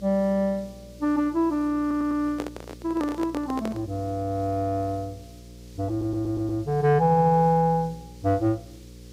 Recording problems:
hum; 60 Hz, harmonics up to 540 Hz, SNR 21 dB
hiss; SNR 28 dB
audio stuttering; at 2 s, at 6 s and at 7 s
handling noise; from 2 to 4 s; peak -4 dB vs average level

